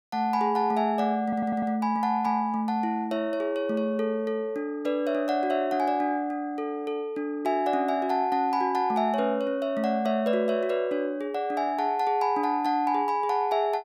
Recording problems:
stutter; at 1 s

